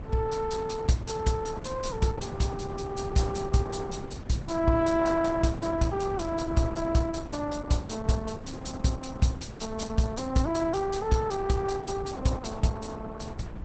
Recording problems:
lossy codec; Opus, log-spectral distance 4 dB, nothing above 8 kHz
wind on the microphone; below 320 Hz, SNR 12 dB

